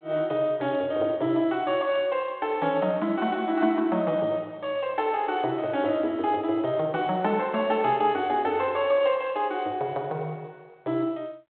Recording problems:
phone line; 240 Hz to 3.7 kHz, G.726

